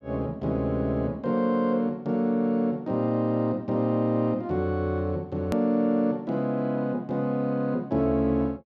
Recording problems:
edit click; at 5.5 s

